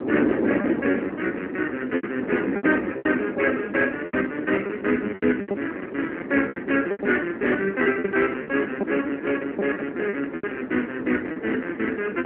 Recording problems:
phone line; 220 Hz to 3.1 kHz, AMR-NB
wind noise; below 460 Hz, SNR 5 dB
lost packets; 11% of the sound replaced, filled with repeated pitch periods

